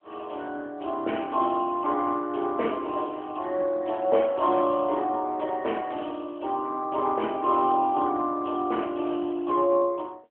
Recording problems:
telephone audio; 260 Hz to 3.2 kHz, AMR-NB

